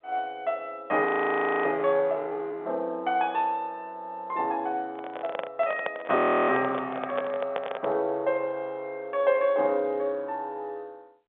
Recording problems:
telephone audio; 300 Hz to 3.8 kHz, G.711
audio freezing; at 1 s for 0.5 s and at 6 s
handling noise; from 5 to 8 s; peak +2 dB vs average level

